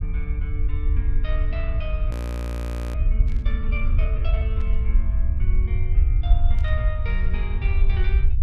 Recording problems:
low-frequency rumble; below 66 Hz, SNR -12 dB
frozen audio; at 2 s for 1 s
static burst; at 3.5 s, at 4.5 s and at 6.5 s; peak -9 dB vs average level

